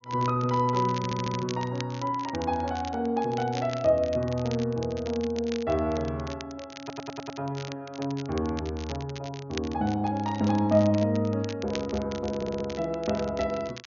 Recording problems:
low-pass filter; nothing above 6.8 kHz
crackle; vinyl, SNR 16 dB
stutter; at 1 s, at 7 s and at 12 s

